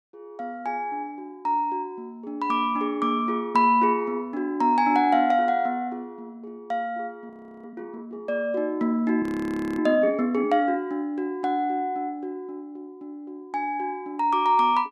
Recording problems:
audio freezing; at 7.5 s and at 9 s for 0.5 s

